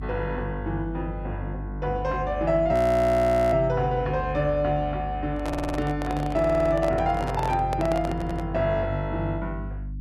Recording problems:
electrical hum; 50 Hz, harmonics up to 300 Hz, SNR 10 dB
frozen audio; at 2.5 s for 1 s
microphone handling noise; from 5.5 to 8.5 s; peak -3 dB vs average level
audio stuttering; at 5.5 s, at 6.5 s and at 8 s

